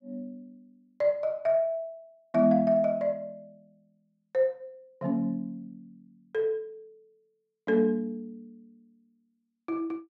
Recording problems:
none

